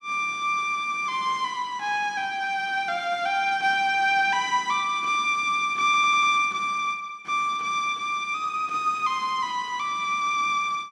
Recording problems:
audio stuttering; at 6 s

